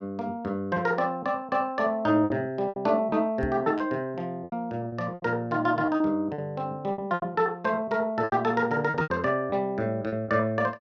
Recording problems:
lost packets; 9% of the sound replaced, filled with repeated pitch periods
knock on the microphone; at 3.5 s; peak -1 dB vs average level

